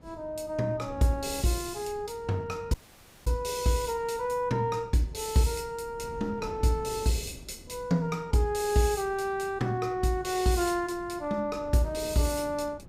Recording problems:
wind on the microphone; below 300 Hz, SNR 19 dB
audio cutting out; at 2.5 s for 0.5 s

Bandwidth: 15.5 kHz